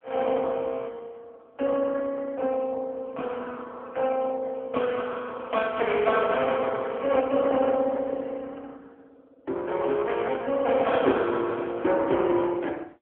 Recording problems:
telephone audio; 240 Hz to 3.3 kHz, AMR-NB

